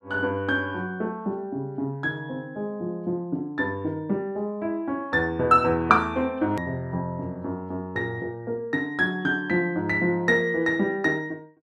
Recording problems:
hard cut with a click; at 6.5 s

